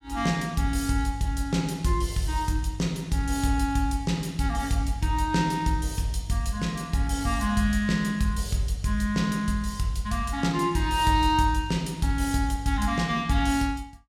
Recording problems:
none

